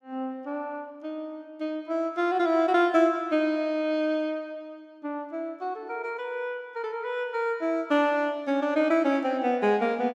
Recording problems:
none

